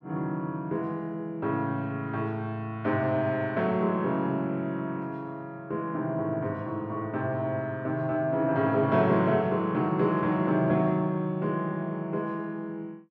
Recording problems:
none

